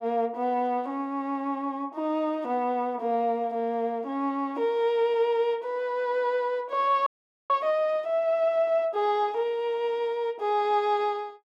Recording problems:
frozen audio; at 7 s

